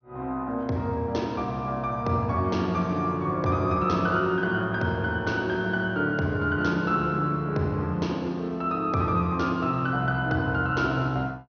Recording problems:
low-pass filter; nothing above 6.1 kHz

